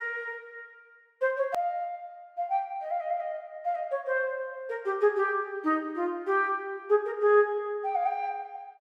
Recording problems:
click at an edit; at 1.5 s

